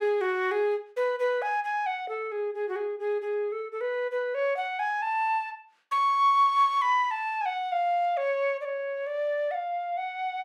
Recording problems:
none

